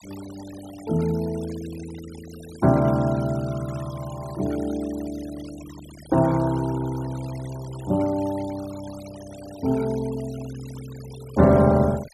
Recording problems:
denoising artefacts; signal-to-artefact ratio 20 dB

